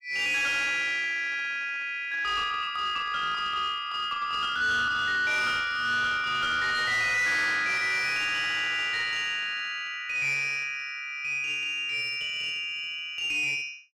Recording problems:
distorted audio; soft clipping, signal-to-distortion ratio 10 dB

